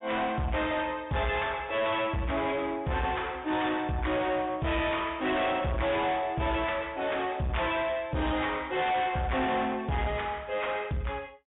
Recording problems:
treble cut off; nothing above 3.6 kHz
distorted audio; soft clipping, signal-to-distortion ratio 7 dB

